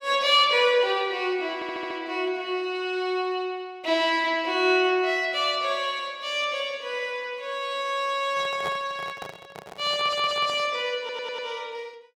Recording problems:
stutter; at 1.5 s, at 10 s and at 11 s
handling noise; from 8.5 to 11 s; peak -6 dB vs average level

